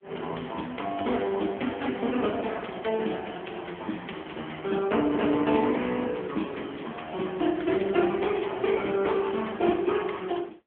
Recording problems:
telephone audio; 220 Hz to 3.4 kHz, AMR-NB

